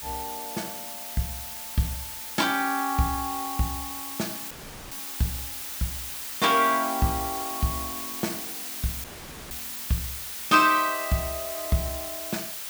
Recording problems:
background hiss; slope +2 dB per octave, SNR 5 dB
dropout; at 4.5 s and at 9 s

